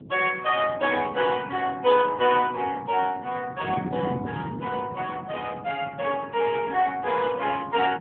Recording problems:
telephone audio; 300 Hz to 3.4 kHz, AMR-NB
wind on the microphone; below 330 Hz, SNR 13 dB

